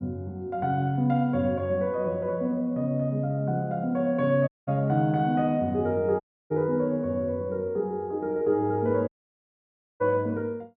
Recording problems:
dropout; at 4.5 s, at 6 s and at 9 s for 1 s

